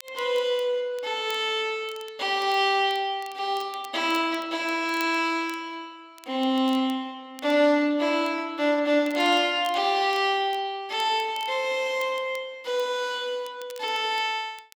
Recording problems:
crackling; vinyl, SNR 25 dB

